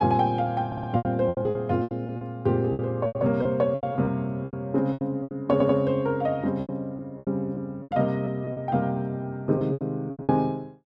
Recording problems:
lost packets; 14% of the sound replaced, filled with repeated pitch periods
audio stuttering; at 0.5 s and at 5.5 s

